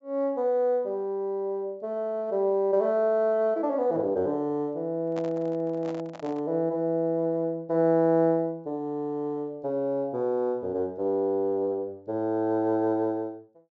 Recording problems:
treble cut off; nothing above 8 kHz
handling noise; from 5 to 6.5 s; peak -8 dB vs average level

